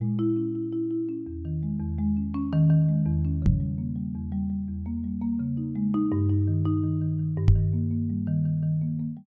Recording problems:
knock on the microphone; at 3.5 s and at 7.5 s; peak +9 dB vs average level

